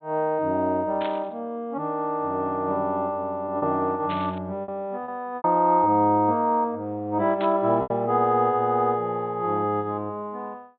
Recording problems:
treble cut off; nothing above 4 kHz
packet loss; 3% of the sound replaced, filled with repeated pitch periods
static burst; at 1 s, at 4 s and at 7.5 s; peak -8 dB vs average level

